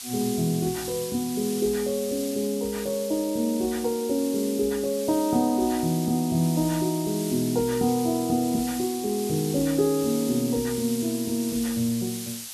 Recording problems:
background hiss; slope +4 dB per octave, SNR 10 dB

